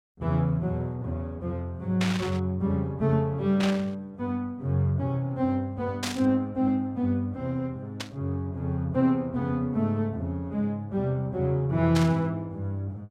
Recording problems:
static burst; 5 times, first at 2 s; peak +1 dB vs average level

